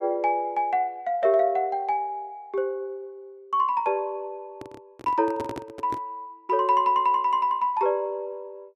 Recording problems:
handling noise; from 4.5 to 6 s; peak -5 dB vs average level

